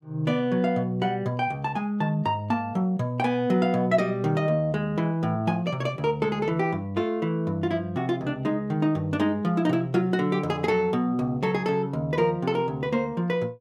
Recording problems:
none

